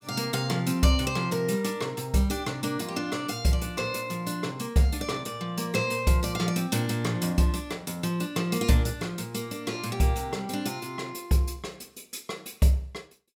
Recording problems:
none

